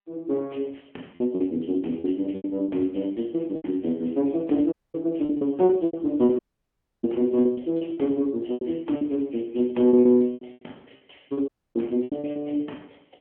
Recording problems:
phone line; 190 Hz to 3.4 kHz, AMR-NB
lost packets; 11% of the sound replaced, filled with repeated pitch periods
audio cutting out; at 4.5 s, at 6.5 s for 0.5 s and at 11 s

